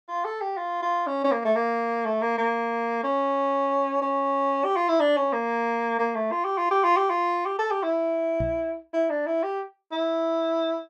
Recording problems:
microphone bump; at 8.5 s; peak -3 dB vs average level

